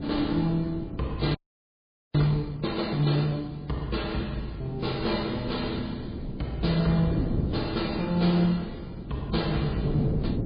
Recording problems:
codec artefacts; MP3, log-spectral distance 3 dB, nothing above 4.8 kHz
wind on the microphone; below 280 Hz, SNR 7 dB
frozen audio; at 1.5 s for 1 s

